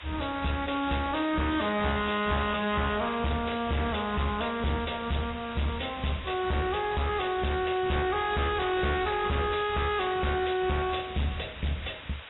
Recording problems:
lossy compression; AAC, log-spectral distance 15 dB, nothing above 3.9 kHz
distortion; hard clipping, uneven, signal-to-distortion ratio 5 dB
hiss; SNR 14 dB

